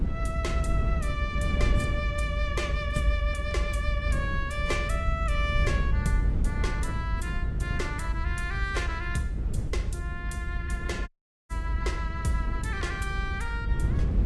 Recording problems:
lossy compression; AAC, log-spectral distance 2 dB, nothing above 11.6 kHz
low-frequency rumble; below 72 Hz, strongest tone 48 Hz, SNR -1 dB
wind on the microphone; below 160 Hz, SNR 2 dB
dropout; at 11 s

